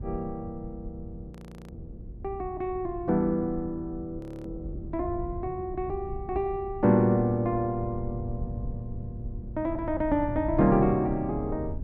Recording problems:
rumble; below 110 Hz, SNR 11 dB
audio freezing; at 1.5 s and at 4 s

